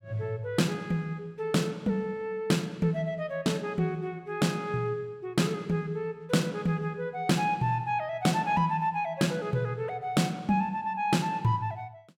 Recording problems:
none

